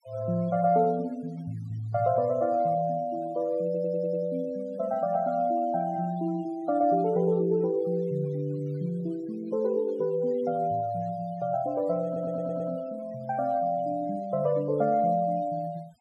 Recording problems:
noise reduction artefacts; signal-to-artefact ratio 25 dB
audio stuttering; at 3.5 s and at 12 s

